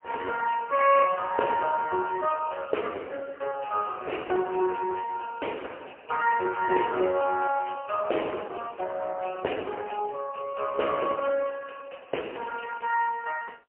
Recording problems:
phone line; 320 Hz to 2.8 kHz, AMR-NB, then MP3

